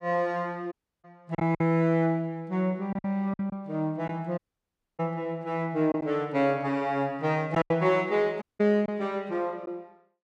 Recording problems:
lost packets; 5% of the sound replaced, filled with silence
audio cutting out; at 0.5 s, at 4.5 s for 0.5 s and at 8.5 s

